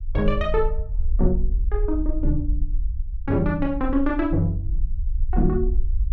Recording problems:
low-frequency rumble; below 48 Hz, SNR 3 dB

